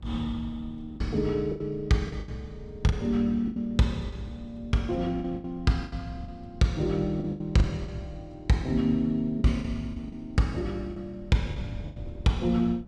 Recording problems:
wind noise; below 130 Hz, SNR 18 dB
lost packets; 9% of the sound replaced, filled with the last packet

